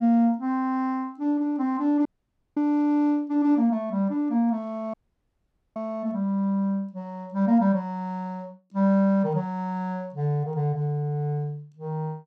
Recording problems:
dropout; at 2 s for 0.5 s and at 5 s for 1 s

